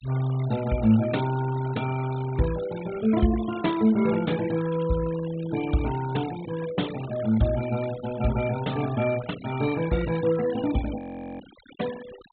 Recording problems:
treble cut off; nothing above 4 kHz
noise reduction artefacts; signal-to-artefact ratio 16 dB
frozen audio; at 11 s

